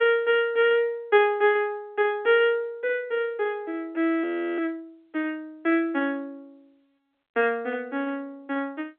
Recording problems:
telephone audio; 240 Hz to 3.4 kHz, G.711
frozen audio; at 4 s

